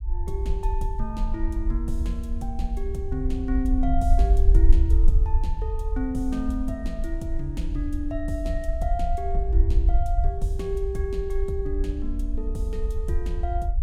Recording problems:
rumble; below 56 Hz, SNR -5 dB

